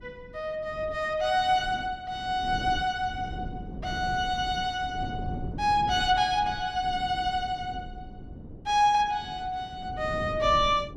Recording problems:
wind noise; below 250 Hz, SNR 13 dB

